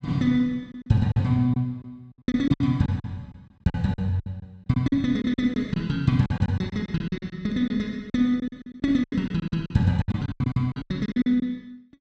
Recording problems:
lost packets; 16% of the sound replaced, filled with silence

